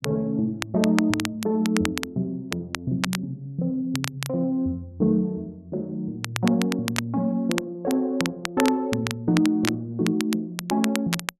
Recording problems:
crackling; vinyl, SNR 7 dB

